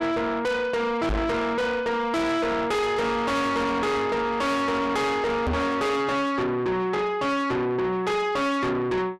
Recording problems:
distorted audio; soft clipping, signal-to-distortion ratio 6 dB
knock on the microphone; at 1 s and at 5.5 s; peak +3 dB vs average level

